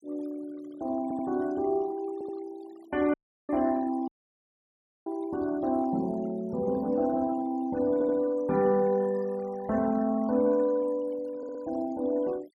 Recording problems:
denoising artefacts; signal-to-artefact ratio 24 dB
audio stuttering; 4 times, first at 1 s
audio cutting out; at 3 s and at 4 s for 1 s

